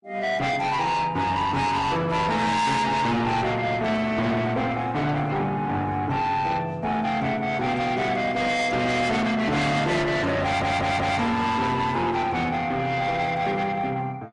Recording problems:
lossy codec; MP3, then AAC, log-spectral distance 3 dB, nothing above 9 kHz
distorted audio; soft clipping, signal-to-distortion ratio 7 dB
stutter; at 10 s

